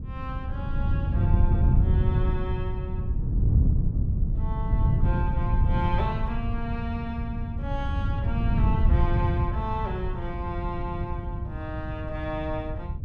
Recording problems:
wind noise; below 120 Hz, SNR -7 dB

